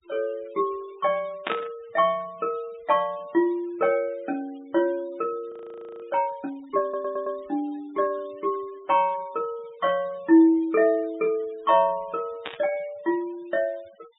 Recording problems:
low-pass filter; nothing above 4 kHz
denoising artefacts; signal-to-artefact ratio 27 dB
burst of static; at 1.5 s and at 12 s; peak 0 dB vs average level
frozen audio; at 5.5 s for 0.5 s
stutter; at 7 s

